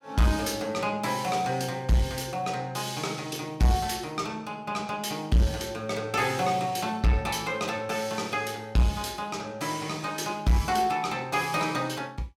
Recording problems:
distorted audio; soft clipping, signal-to-distortion ratio 10 dB

